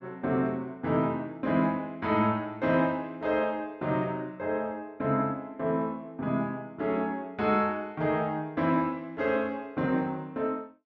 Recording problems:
none

